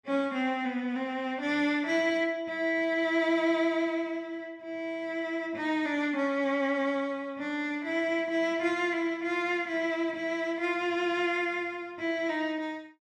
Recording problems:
none

